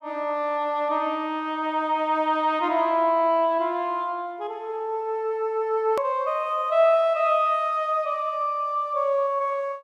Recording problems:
edit click; at 6 s

